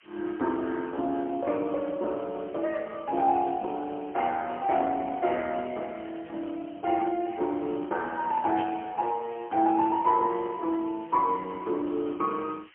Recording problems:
telephone audio; 220 Hz to 3.4 kHz, AMR-NB, then MP3
hiss; SNR 27 dB
static burst; at 8.5 s; peak -5 dB vs average level

